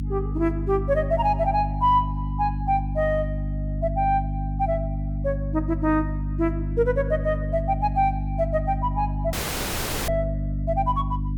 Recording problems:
hum; 50 Hz, harmonics up to 300 Hz, SNR 3 dB
audio cutting out; at 9.5 s for 1 s

